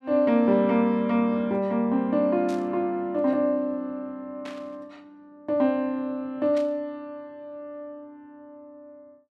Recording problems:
burst of static; at 2.5 s, at 4.5 s and at 6.5 s; peak -13 dB vs average level

